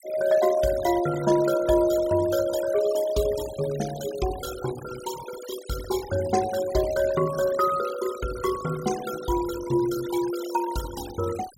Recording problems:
noise reduction artefacts; signal-to-artefact ratio 13 dB

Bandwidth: 16 kHz